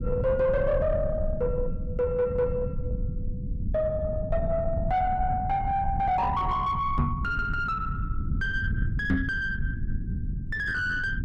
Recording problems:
distorted audio; soft clipping, signal-to-distortion ratio 9 dB
rumble; below 130 Hz, SNR 4 dB
microphone bump; at 7 s and at 9 s; peak +7 dB vs average level

